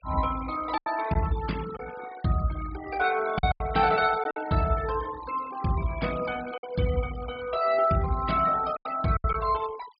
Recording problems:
treble cut off; nothing above 4.9 kHz
noise reduction artefacts; signal-to-artefact ratio 17 dB
lost packets; 5% of the sound replaced, filled with silence

